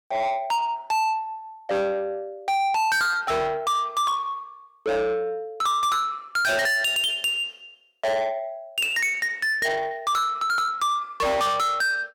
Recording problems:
distortion; soft clipping, signal-to-distortion ratio 6 dB

